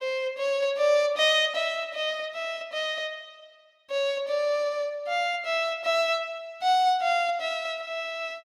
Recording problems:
none

